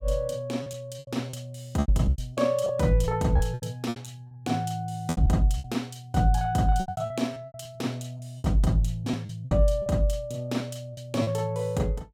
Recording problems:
packet loss; 12% of the sound replaced, filled with repeated pitch periods

